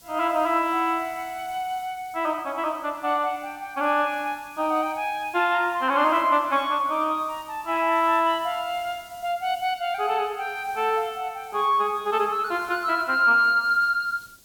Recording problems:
hiss; SNR 25 dB

